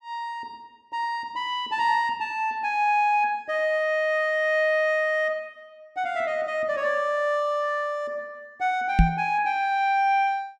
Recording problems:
microphone thump; at 9 s; peak +9 dB vs average level

